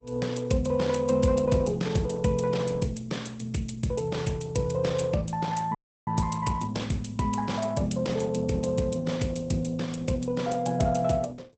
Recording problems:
lossy compression; Opus, log-spectral distance 4 dB, nothing above 8 kHz
audio cutting out; at 6 s

